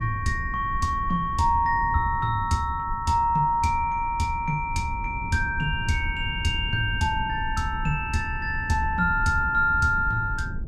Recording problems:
rumble; below 110 Hz, SNR 10 dB

